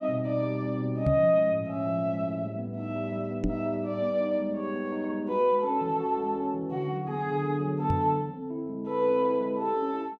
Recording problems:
microphone thump; at 1 s, at 3.5 s and at 8 s; peak +4 dB vs average level

